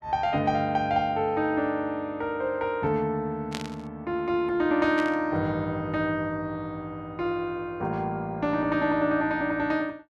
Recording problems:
static burst; at 3.5 s and at 5 s; peak -3 dB vs average level

